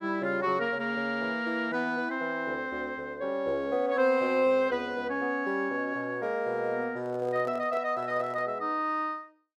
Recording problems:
microphone handling noise; from 7 to 8.5 s; peak -10 dB vs average level

